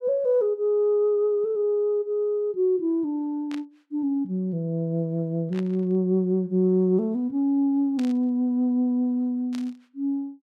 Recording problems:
burst of static; 4 times, first at 3.5 s; peak -12 dB vs average level

